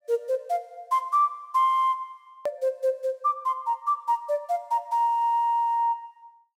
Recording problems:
edit click; at 2.5 s

